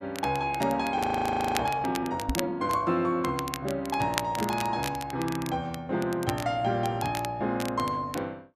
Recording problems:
crackling; vinyl, SNR 11 dB
audio freezing; at 1 s for 0.5 s
knock on the microphone; at 2.5 s; peak +2 dB vs average level

